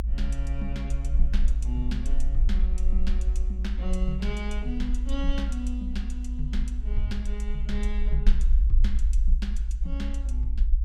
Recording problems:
rumble; below 54 Hz, strongest tone 22 Hz, SNR -8 dB

